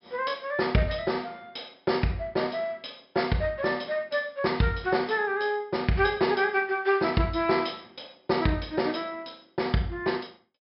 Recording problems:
treble missing; nothing above 5.3 kHz

